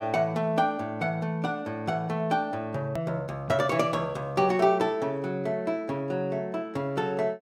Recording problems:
click at an edit; at 3 s

